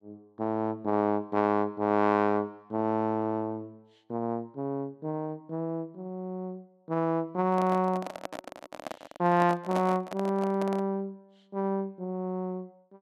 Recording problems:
microphone handling noise; from 7.5 to 11 s; peak -1 dB vs average level

